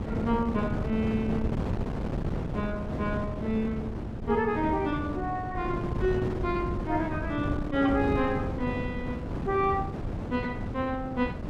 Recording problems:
wind noise; below 330 Hz, SNR 3 dB

